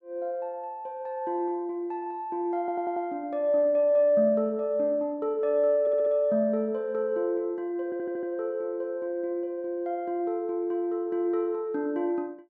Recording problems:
audio stuttering; at 2.5 s, at 6 s and at 8 s

